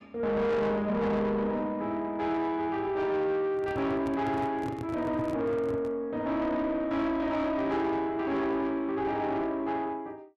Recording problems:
distortion; soft clipping, signal-to-distortion ratio 10 dB
microphone handling noise; from 3.5 to 6 s; peak -2 dB vs average level

